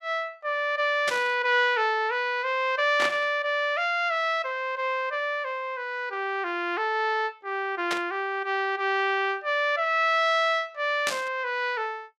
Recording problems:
burst of static; 4 times, first at 1 s; peak +1 dB vs average level

